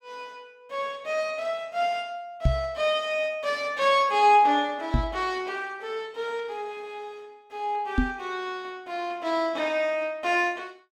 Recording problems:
microphone bump; at 2.5 s, at 5 s and at 8 s; peak +7 dB vs average level

